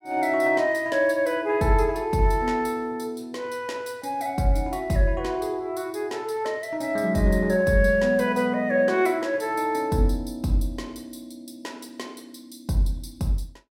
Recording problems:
none

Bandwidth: 16.5 kHz